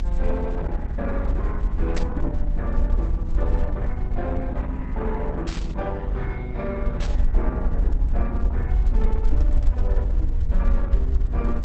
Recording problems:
lossy compression; Opus, log-spectral distance 2 dB
hum; 50 Hz, harmonics up to 650 Hz, SNR 5 dB
rumble; below 58 Hz, SNR -7 dB
static burst; at 2 s, at 5.5 s and at 7 s; peak 0 dB vs average level

